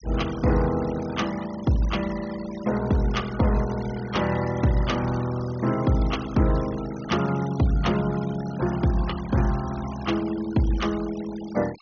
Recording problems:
low-pass filter; nothing above 6.5 kHz
denoising artefacts; signal-to-artefact ratio 16 dB

